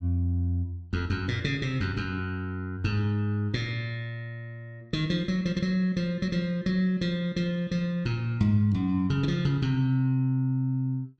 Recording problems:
none

